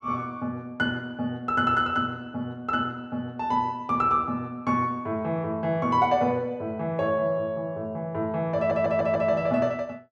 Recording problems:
audio stuttering; at 8.5 s

